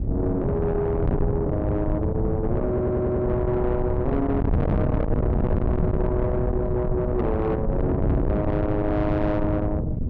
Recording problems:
distortion; soft clipping, signal-to-distortion ratio 8 dB
wind on the microphone; below 270 Hz, SNR 1 dB
stutter; at 2.5 s

